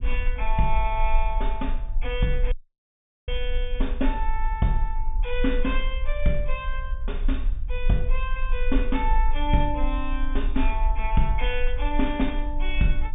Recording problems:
treble cut off; nothing above 3.6 kHz
low-frequency rumble; below 38 Hz, strongest tone 18 Hz, SNR 1 dB
dropout; at 2.5 s for 1 s

